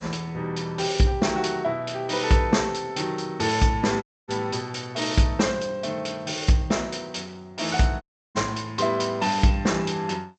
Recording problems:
codec artefacts; G.722, log-spectral distance 3 dB, nothing above 7.6 kHz
dropout; at 4 s and at 8 s

